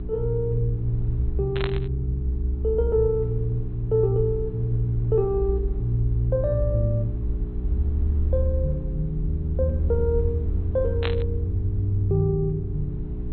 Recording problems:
low-pass filter; nothing above 4.1 kHz
hum; 60 Hz, harmonics up to 420 Hz, SNR 9 dB
rumble; below 48 Hz, strongest tone 40 Hz, SNR 9 dB
static burst; at 1.5 s and at 11 s; peak 0 dB vs average level

